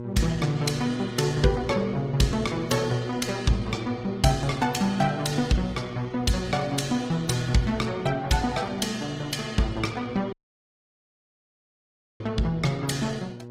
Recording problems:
codec artefacts; Opus, log-spectral distance 4 dB, nothing above 18.9 kHz
mains hum; 60 Hz, harmonics up to 1.1 kHz, SNR 12 dB
dropout; at 10 s for 2 s

